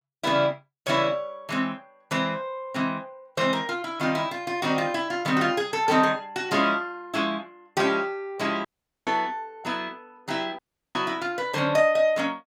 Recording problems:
audio cutting out; at 8.5 s and at 11 s

